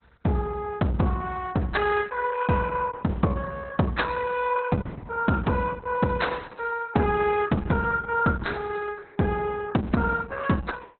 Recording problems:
lossy compression; Opus, log-spectral distance 4 dB, nothing above 4.1 kHz

